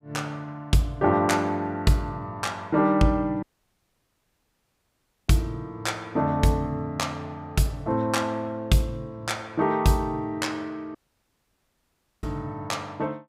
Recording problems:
audio cutting out; at 3.5 s for 2 s and at 11 s for 1.5 s

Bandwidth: 15.5 kHz